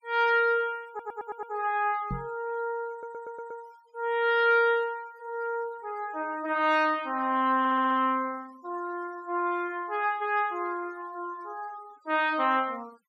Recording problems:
denoising artefacts; signal-to-artefact ratio 25 dB
stutter; at 1 s, at 3 s and at 7.5 s
knock on the microphone; at 2 s; peak -3 dB vs average level

